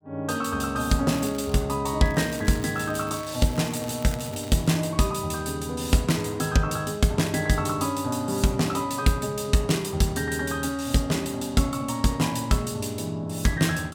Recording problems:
crackle; at 1 s and from 2 to 5 s; loose cable, SNR 19 dB

